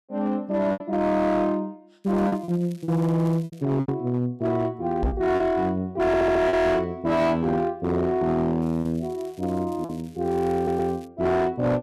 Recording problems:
distorted audio; hard clipping, signal-to-distortion ratio 11 dB
packet loss; 5% of the sound replaced, filled with repeated pitch periods
crackle; from 2 to 3.5 s and from 8.5 to 11 s; loose cable, SNR 29 dB
microphone bump; at 5 s; peak +3 dB vs average level
stutter; at 6 s and at 11 s

